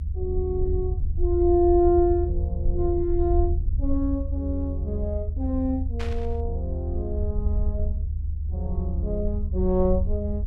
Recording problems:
low-frequency rumble; below 76 Hz, SNR 2 dB
static burst; at 6 s; peak -7 dB vs average level

